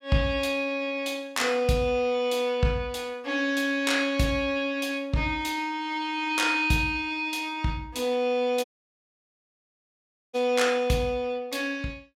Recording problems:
dropout; at 8.5 s for 1.5 s

